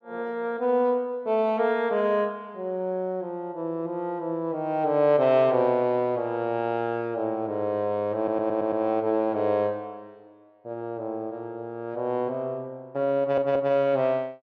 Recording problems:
audio stuttering; at 8 s and at 13 s

